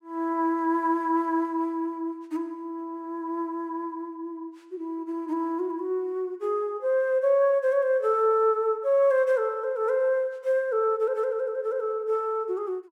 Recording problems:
none

